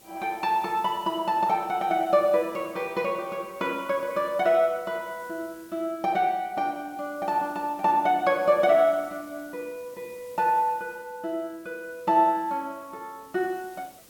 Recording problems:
hiss; SNR 25 dB

